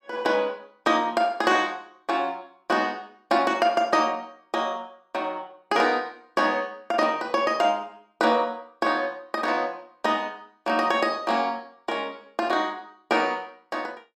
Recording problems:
none

